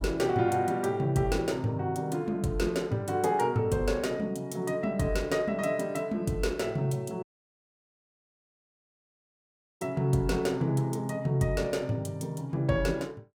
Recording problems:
dropout; at 7 s for 2.5 s

